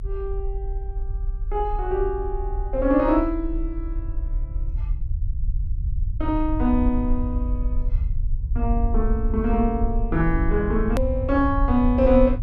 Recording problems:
rumble; below 64 Hz, strongest tone 32 Hz, SNR 4 dB
edit click; at 11 s

